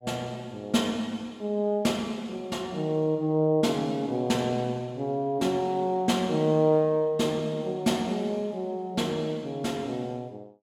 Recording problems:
none

